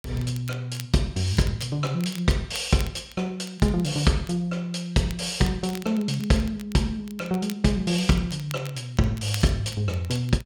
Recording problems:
crackle; vinyl, SNR 19 dB

